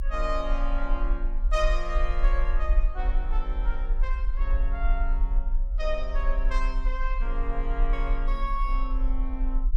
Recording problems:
rumble; below 40 Hz, strongest tone 28 Hz, SNR -5 dB

